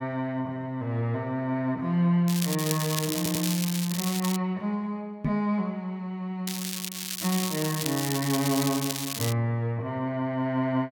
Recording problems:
crackling; from 2.5 to 4.5 s and from 6.5 to 9.5 s; loose cable, SNR 3 dB
audio stuttering; at 3 s
microphone bump; at 5.5 s; peak +3 dB vs average level

